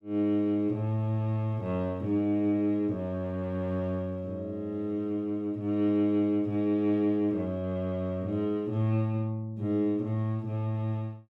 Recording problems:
none

